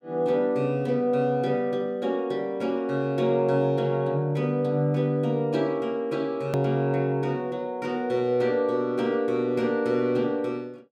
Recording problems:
edit click; at 6.5 s

